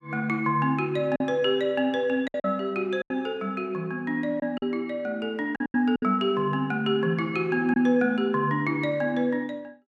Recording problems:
lost packets; 5% of the sound replaced, filled with silence

